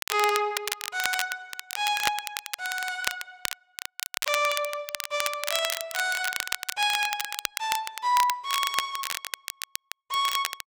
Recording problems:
crackling; vinyl, SNR 4 dB

